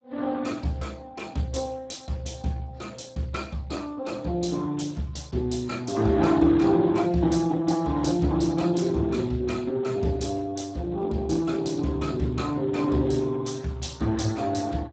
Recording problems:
lossy compression; Speex, log-spectral distance 4 dB, nothing above 7.6 kHz

